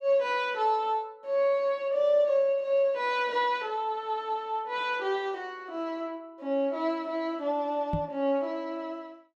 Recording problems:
microphone bump; at 8 s; peak +2 dB vs average level

